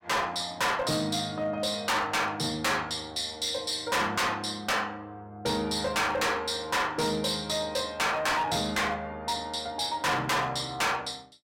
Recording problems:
distortion; hard clipping, signal-to-distortion ratio 6 dB

